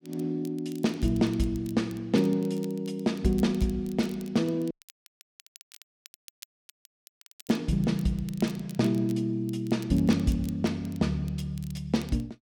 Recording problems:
crackle; vinyl, SNR 24 dB
audio cutting out; at 4.5 s for 3 s

